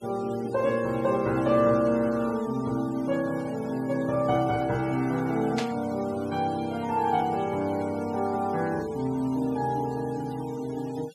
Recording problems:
denoising artefacts; signal-to-artefact ratio 21 dB
burst of static; at 5.5 s; peak -1 dB vs average level

